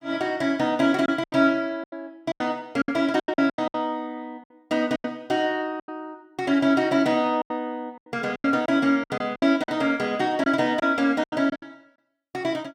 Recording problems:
lost packets; 12% of the sound replaced, filled with silence

